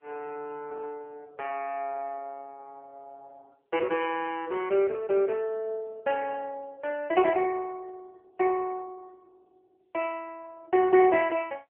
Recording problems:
telephone audio; 320 Hz to 3.3 kHz, AMR-NB

